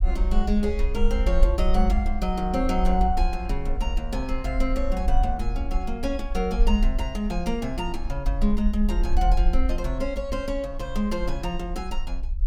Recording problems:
rumble; below 50 Hz, SNR 0 dB

